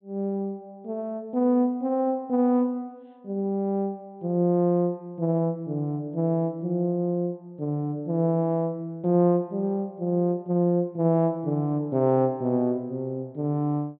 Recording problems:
treble missing; nothing above 4 kHz

